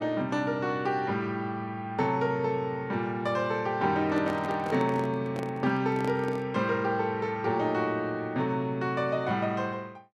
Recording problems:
microphone handling noise; from 4 to 6.5 s; peak -6 dB vs average level

